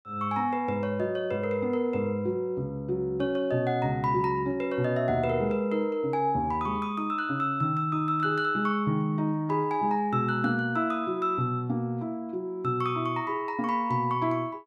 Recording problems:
none

